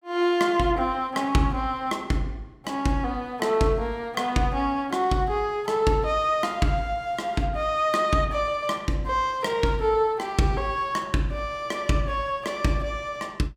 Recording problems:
none

